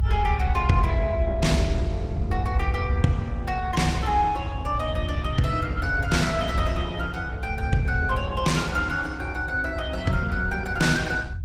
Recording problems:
lossy codec; Opus, log-spectral distance 2 dB, nothing above 18.5 kHz
rumble; below 86 Hz, SNR 2 dB

